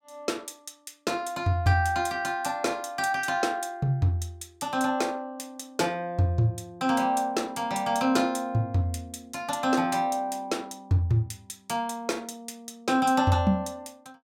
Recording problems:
none

